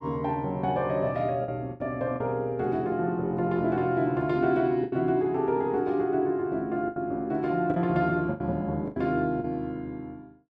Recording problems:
lost packets; 5% of the sound replaced, filled with the last packet

